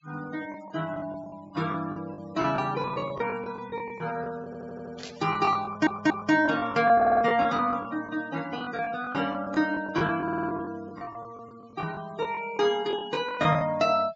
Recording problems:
treble missing; nothing above 7.5 kHz
noise reduction artefacts; signal-to-artefact ratio 20 dB
packet loss; 14% of the sound replaced, filled with the last packet
stutter; 4 times, first at 4.5 s
static burst; at 5 s; peak -8 dB vs average level

